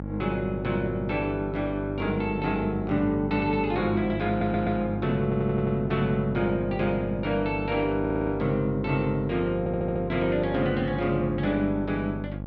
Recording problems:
hum; 50 Hz, harmonics up to 900 Hz, SNR 8 dB
stutter; 4 times, first at 4.5 s

